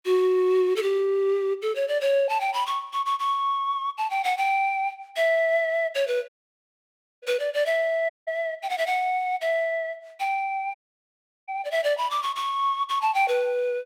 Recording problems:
audio cutting out; at 6.5 s for 1 s, at 8 s and at 11 s for 0.5 s

